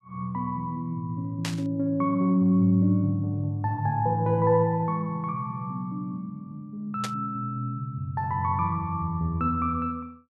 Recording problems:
burst of static; at 1.5 s and at 7 s; peak -2 dB vs average level

